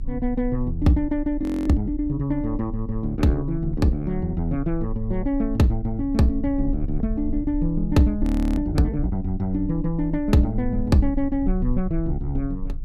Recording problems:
low-frequency rumble; below 46 Hz, strongest tone 32 Hz, SNR 9 dB
audio freezing; at 1.5 s and at 8 s

